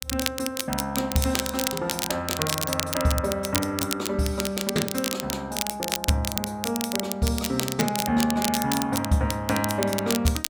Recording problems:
crackling; vinyl, SNR 3 dB

